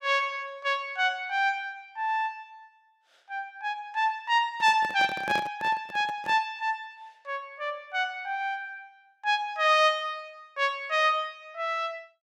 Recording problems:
microphone handling noise; from 4.5 to 6.5 s; peak -3 dB vs average level

